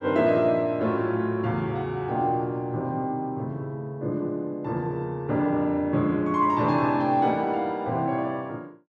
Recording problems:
none

